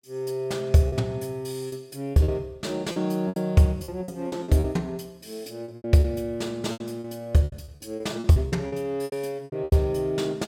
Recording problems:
packet loss; 13% of the sound replaced, filled with repeated pitch periods

